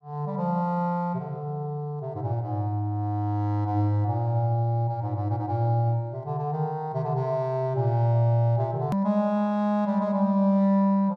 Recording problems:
edit click; at 9 s

